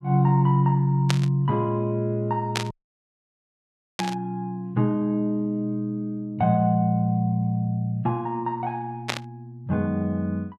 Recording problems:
static burst; 4 times, first at 1 s; peak +3 dB vs average level
audio cutting out; at 2.5 s for 1.5 s

